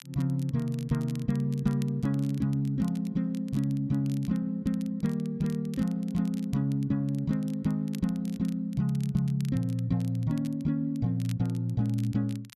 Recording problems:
crackling; vinyl, SNR 24 dB

